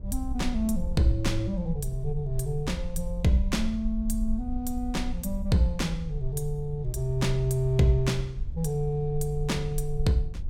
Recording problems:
low-frequency rumble; below 54 Hz, SNR 8 dB
wind noise; below 150 Hz, SNR 18 dB

